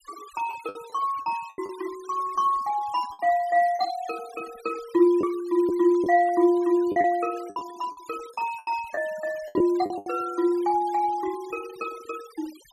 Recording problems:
noise reduction artefacts; signal-to-artefact ratio 22 dB
packet loss; 7% of the sound replaced, filled with the last packet

